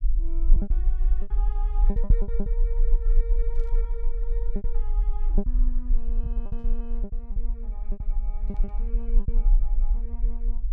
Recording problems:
rumble; below 38 Hz, strongest tone 24 Hz, SNR -16 dB
lost packets; 10% of the sound replaced, filled with repeated pitch periods
burst of static; 4 times, first at 2 s; peak -14 dB vs average level

